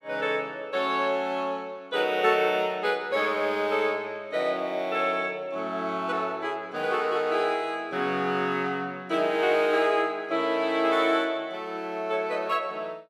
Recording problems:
none

